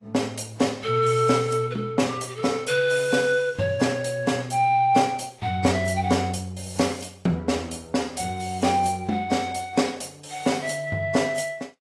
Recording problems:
codec artefacts; AAC, log-spectral distance 4 dB, nothing above 11.3 kHz

